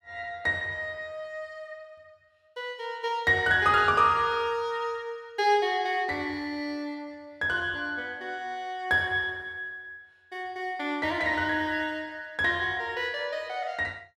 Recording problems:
none

